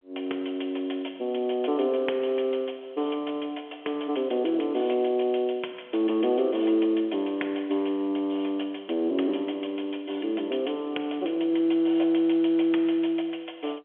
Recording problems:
phone line; 300 Hz to 3.4 kHz, G.711

